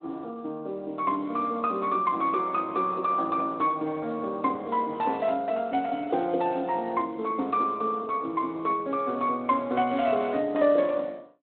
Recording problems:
telephone audio; 190 Hz to 3.7 kHz, Speex

